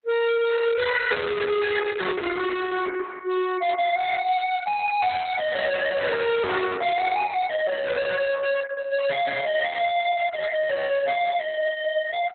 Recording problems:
lossy codec; Opus, log-spectral distance 5 dB, nothing above 4 kHz
distorted audio; hard clipping, signal-to-distortion ratio 5 dB

